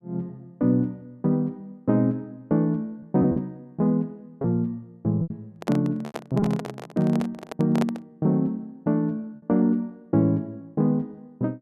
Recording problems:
packet loss; 3% of the sound replaced, filled with repeated pitch periods
handling noise; from 5.5 to 8 s; peak 0 dB vs average level

